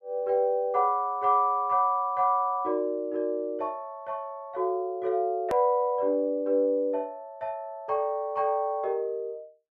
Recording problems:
hard cut with a click; at 5.5 s

